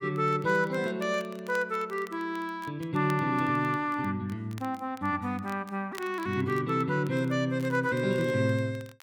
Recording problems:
crackle; vinyl, SNR 24 dB

